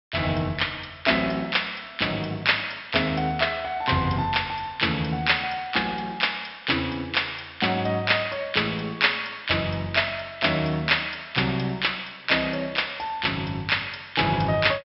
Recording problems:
low-pass filter; nothing above 5.5 kHz

